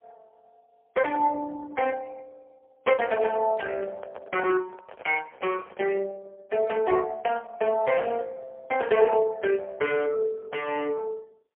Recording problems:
telephone audio; 300 Hz to 3.1 kHz, AMR-NB, then MP3
handling noise; from 3.5 to 6 s; peak -7 dB vs average level

